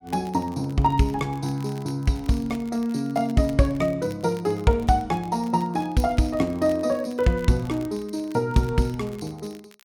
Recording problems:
crackling; vinyl, SNR 26 dB

